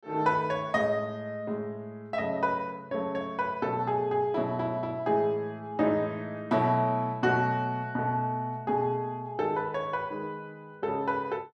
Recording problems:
none

